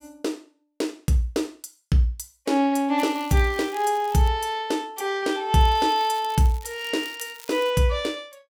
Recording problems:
crackle; from 3 to 4.5 s and from 5.5 to 7.5 s; loose cable, SNR 21 dB

